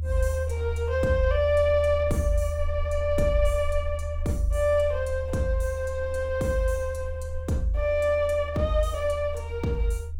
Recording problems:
rumble; below 80 Hz, strongest tone 78 Hz, SNR 6 dB

